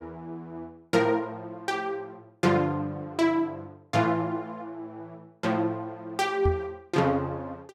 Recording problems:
microphone bump; at 6.5 s; peak +4 dB vs average level

